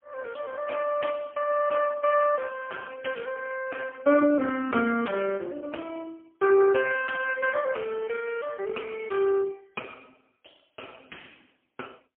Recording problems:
phone line; 190 Hz to 2.4 kHz, AMR-NB, then MP3

